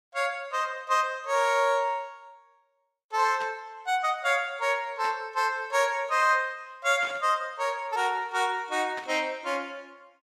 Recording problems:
burst of static; 4 times, first at 3.5 s; peak -10 dB vs average level

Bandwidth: 15 kHz